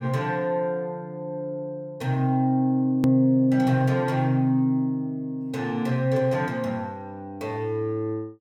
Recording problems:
hard cut with a click; at 3 s

